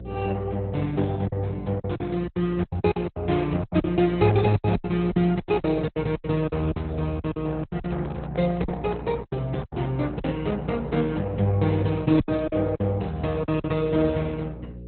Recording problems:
lossy codec; Opus, log-spectral distance 3 dB, nothing above 4 kHz
hum; 60 Hz, harmonics up to 540 Hz, SNR 14 dB
lost packets; 12% of the sound replaced, filled with silence
handling noise; from 7.5 to 9 s; peak -4 dB vs average level

